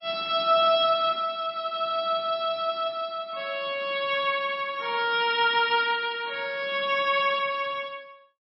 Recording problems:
lossy codec; MP3, log-spectral distance 3 dB, nothing above 5.2 kHz

